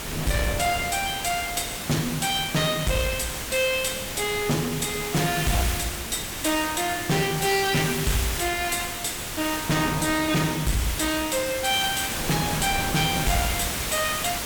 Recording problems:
distorted audio; hard clipping, uneven, signal-to-distortion ratio 5 dB
hiss; slope -1 dB per octave, SNR 5 dB
wind on the microphone; below 760 Hz, SNR 12 dB

